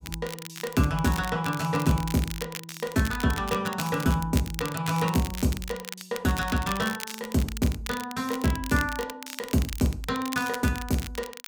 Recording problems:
crackling; vinyl, SNR 11 dB

